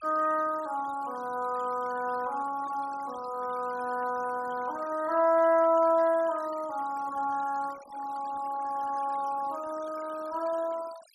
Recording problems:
denoising artefacts; signal-to-artefact ratio 20 dB

